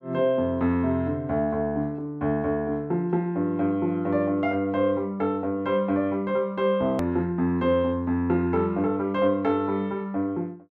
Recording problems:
hard cut with a click; at 7 s

